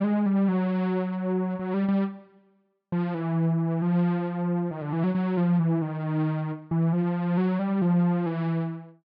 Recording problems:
low-pass filter; nothing above 5.5 kHz

